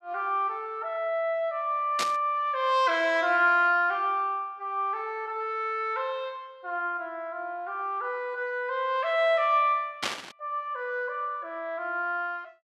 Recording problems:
static burst; at 2 s and at 10 s; peak +2 dB vs average level

